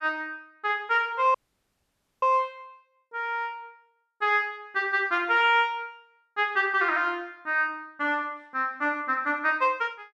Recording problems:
audio cutting out; at 1.5 s for 1 s

